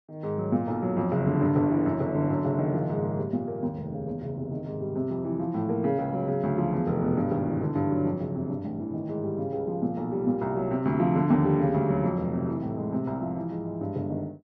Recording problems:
none

